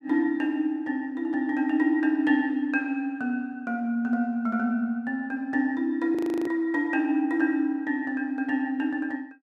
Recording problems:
frozen audio; at 6 s

